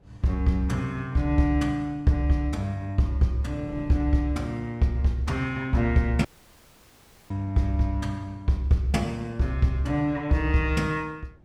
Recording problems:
wind noise; below 260 Hz, SNR 24 dB
audio cutting out; at 6.5 s for 1 s

